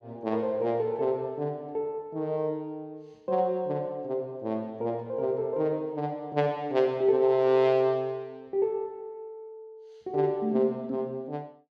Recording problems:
none

